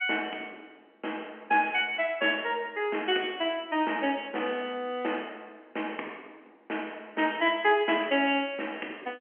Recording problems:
phone line; 240 Hz to 3.2 kHz, G.711

